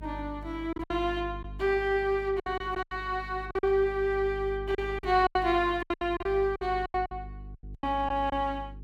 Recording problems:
electrical hum; 50 Hz, harmonics up to 450 Hz, SNR 14 dB
packet loss; 12% of the sound replaced, filled with silence

